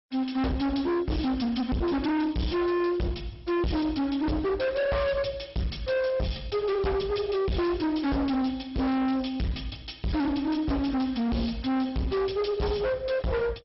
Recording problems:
codec artefacts; MP2, log-spectral distance 4 dB, nothing above 5.5 kHz
distorted audio; hard clipping, uneven, signal-to-distortion ratio 6 dB

